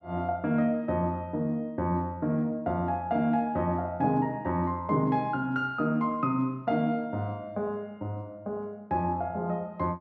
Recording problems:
none

